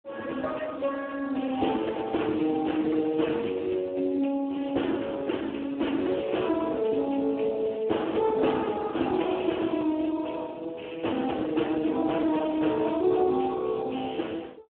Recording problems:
telephone audio; 240 Hz to 3.3 kHz, Speex

